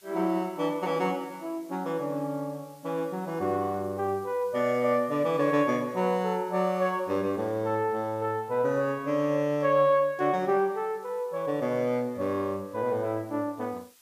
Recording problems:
hiss; slope +2 dB per octave, SNR 29 dB

